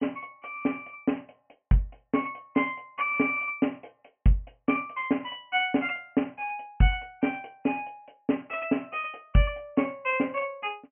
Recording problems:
treble missing; nothing above 3 kHz

